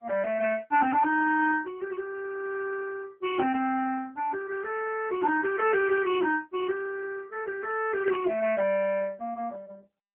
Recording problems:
phone line; 240 Hz to 3.1 kHz, AMR-NB
static burst; at 8 s; peak -7 dB vs average level

